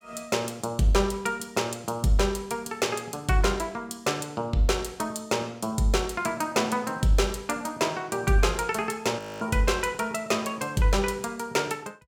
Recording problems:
frozen audio; at 9 s

